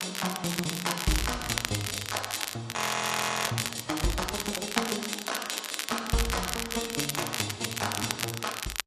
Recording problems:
lossy compression; AAC, log-spectral distance 4 dB, nothing above 11 kHz
crackling; vinyl, SNR 2 dB
audio freezing; at 3 s for 0.5 s

